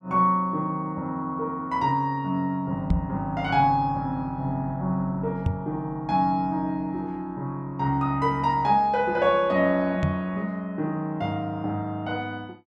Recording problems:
knock on the microphone; at 3 s, at 5.5 s and at 10 s; peak +5 dB vs average level

